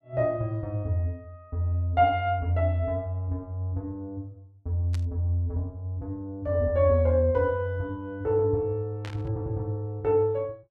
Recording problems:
static burst; at 5 s and at 9 s; peak -10 dB vs average level

